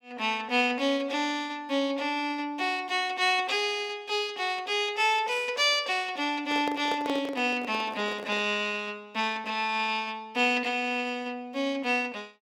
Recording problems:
handling noise; from 6.5 to 8.5 s; peak -3 dB vs average level

